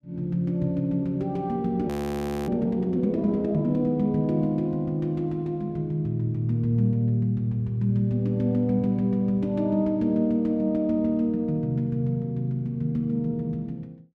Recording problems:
frozen audio; at 2 s for 0.5 s

